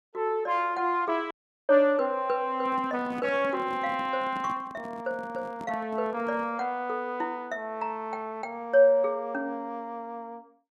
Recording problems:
dropout; at 1.5 s
handling noise; from 2.5 to 6.5 s; peak -9 dB vs average level

